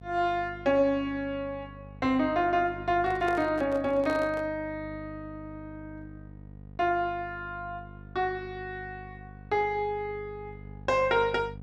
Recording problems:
electrical hum; 50 Hz, harmonics up to 750 Hz, SNR 17 dB
handling noise; from 3 to 4.5 s; peak -5 dB vs average level

